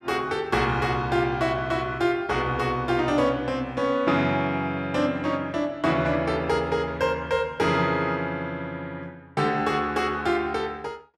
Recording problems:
none

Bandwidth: 13.5 kHz